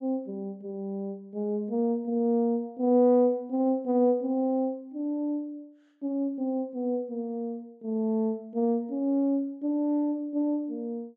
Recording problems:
none

